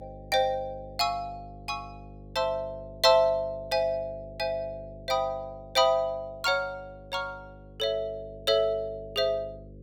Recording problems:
hum; 50 Hz, harmonics up to 550 Hz, SNR 19 dB

